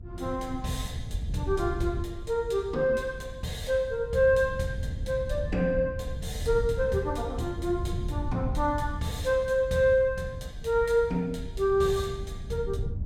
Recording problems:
rumble; below 110 Hz, SNR 9 dB

